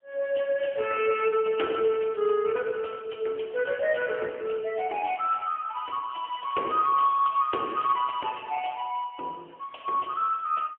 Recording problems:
phone line; 300 Hz to 3.3 kHz, AMR-NB, then MP3

